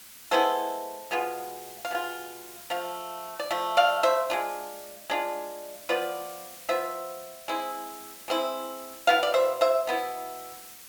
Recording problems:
hiss; slope +2 dB per octave, SNR 16 dB

